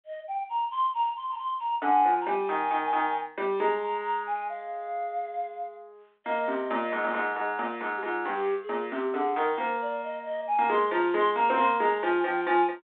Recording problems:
telephone audio; 260 Hz to 3.7 kHz, G.726

